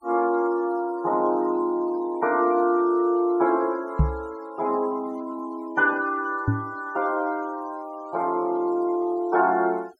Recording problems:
noise reduction artefacts; signal-to-artefact ratio 26 dB
microphone bump; at 4 s and at 6.5 s; peak +7 dB vs average level

